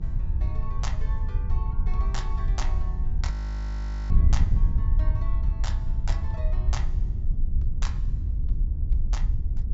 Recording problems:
treble missing; nothing above 8 kHz
hum; 50 Hz, harmonics up to 700 Hz, SNR 17 dB
rumble; below 56 Hz, SNR 1 dB
wind on the microphone; below 68 Hz, SNR -12 dB
audio freezing; at 3.5 s for 1 s

